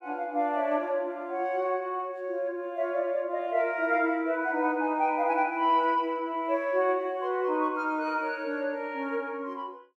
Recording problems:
none

